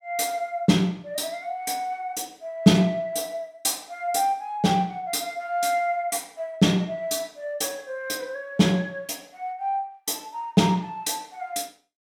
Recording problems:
none

